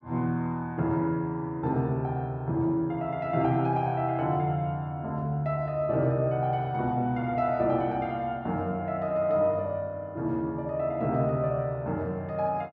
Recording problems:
none

